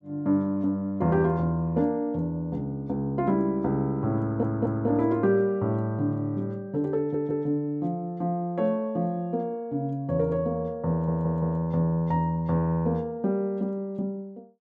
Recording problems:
audio stuttering; at 4 s, at 7 s and at 11 s

